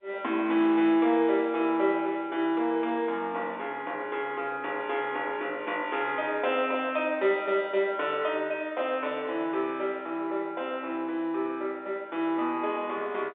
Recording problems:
phone line; 280 Hz to 3.6 kHz, G.711

